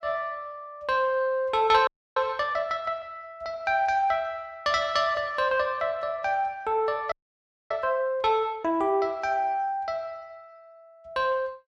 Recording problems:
audio freezing; at 2 s and at 7 s for 0.5 s

